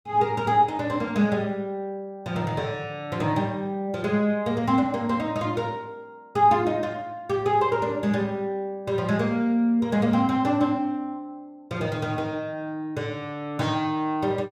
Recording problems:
none

